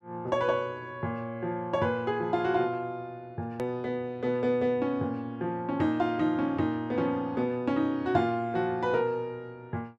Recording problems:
hard cut with a click; at 3.5 s

